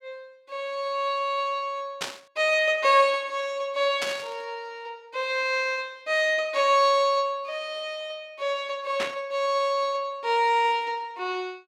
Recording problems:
burst of static; at 2 s, at 4 s and at 9 s; peak -1 dB vs average level

